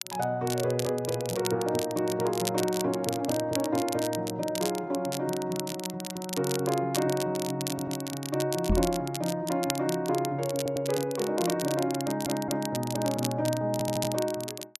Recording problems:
crackling; vinyl, SNR 8 dB
stutter; 4 times, first at 7.5 s
microphone bump; at 8.5 s; peak +6 dB vs average level

